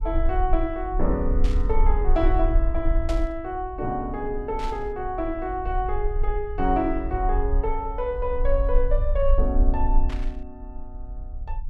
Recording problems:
rumble; below 44 Hz, strongest tone 22 Hz, SNR 0 dB
burst of static; 4 times, first at 1.5 s; peak -6 dB vs average level

